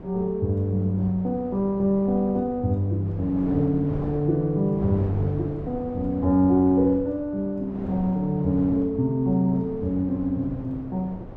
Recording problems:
wind on the microphone; below 410 Hz, SNR 13 dB

